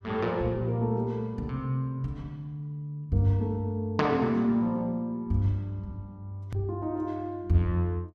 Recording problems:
hard cut with a click; at 6.5 s

